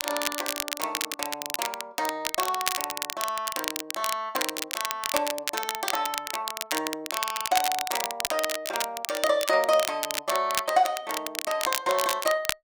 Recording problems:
crackle; vinyl, SNR 2 dB

